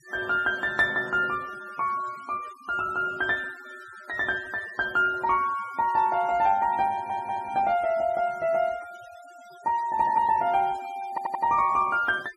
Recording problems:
noise reduction artefacts; signal-to-artefact ratio 22 dB
stutter; at 7 s and at 11 s

